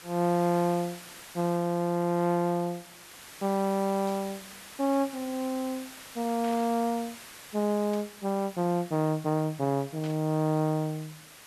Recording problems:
background hiss; slope 0 dB per octave, SNR 16 dB
static burst; 4 times, first at 4 s; peak -12 dB vs average level

